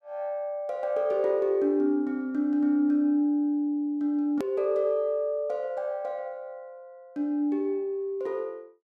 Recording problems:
click at an edit; at 4.5 s

